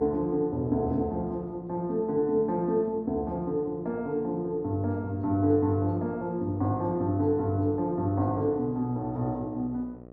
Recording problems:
electrical hum; 60 Hz, harmonics up to 1.3 kHz, SNR 20 dB

